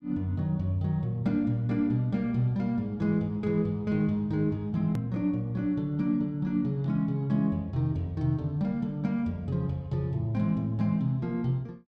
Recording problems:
click at an edit; at 5 s

